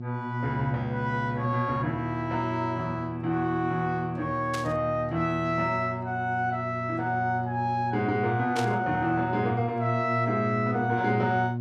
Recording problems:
mains hum; 60 Hz, harmonics up to 720 Hz, SNR 6 dB
static burst; at 4.5 s and at 8.5 s; peak -3 dB vs average level

